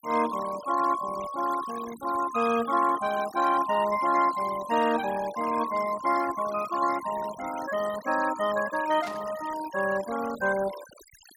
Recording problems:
noise reduction artefacts; signal-to-artefact ratio 15 dB
static burst; at 9 s; peak -10 dB vs average level

